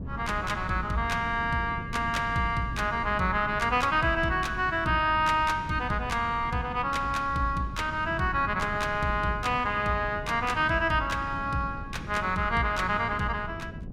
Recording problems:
wind noise; below 210 Hz, SNR 12 dB

